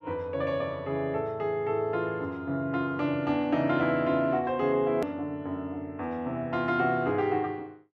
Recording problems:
edit click; at 5 s

